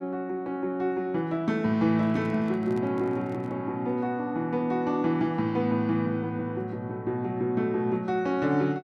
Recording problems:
microphone handling noise; from 2 to 3.5 s; peak -10 dB vs average level

